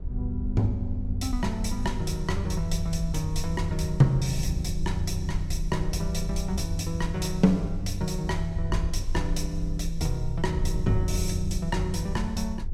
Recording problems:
wind on the microphone; below 70 Hz, SNR 5 dB

